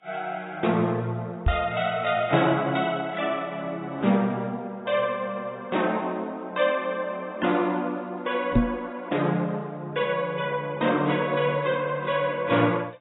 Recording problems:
codec artefacts; AAC, log-spectral distance 3 dB, nothing above 3.8 kHz
microphone bump; at 1.5 s and at 8.5 s; peak +9 dB vs average level

